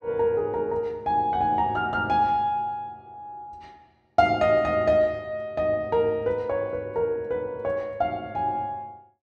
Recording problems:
none

